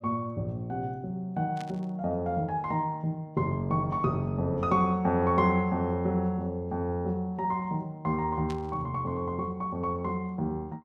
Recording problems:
static burst; at 1.5 s and at 8.5 s; peak -11 dB vs average level

